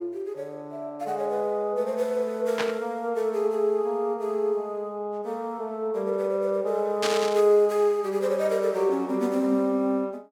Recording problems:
burst of static; at 2.5 s and at 7 s; peak +1 dB vs average level

